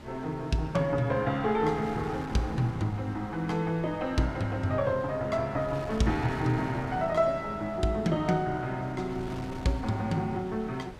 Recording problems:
wind noise; below 720 Hz, SNR 15 dB

